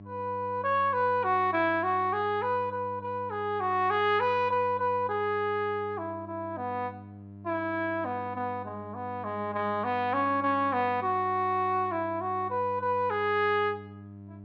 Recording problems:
hum; 50 Hz, harmonics up to 700 Hz, SNR 17 dB

